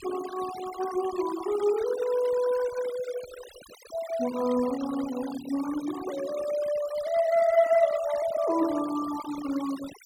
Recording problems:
noise reduction artefacts; signal-to-artefact ratio 15 dB

